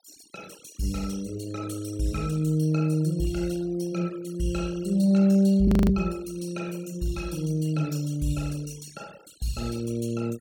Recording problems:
noise reduction artefacts; signal-to-artefact ratio 21 dB
audio freezing; at 5.5 s

